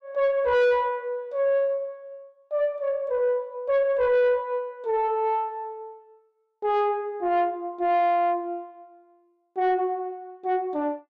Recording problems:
distorted audio; soft clipping, signal-to-distortion ratio 11 dB

